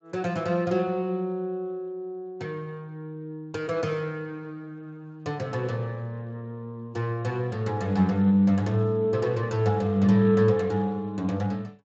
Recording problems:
lossy compression; Speex, log-spectral distance 2 dB

